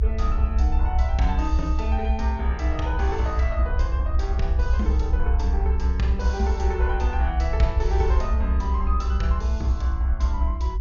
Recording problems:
treble cut off; nothing above 7 kHz
low-frequency rumble; below 66 Hz, SNR -6 dB

